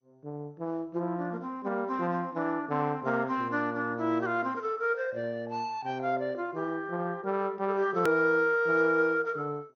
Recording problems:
lossy compression; MP2, log-spectral distance 2 dB, nothing above 19.5 kHz
edit click; at 8 s

